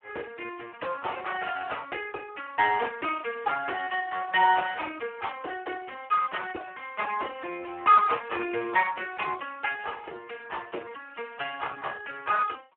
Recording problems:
telephone audio; 280 Hz to 2.8 kHz, Speex

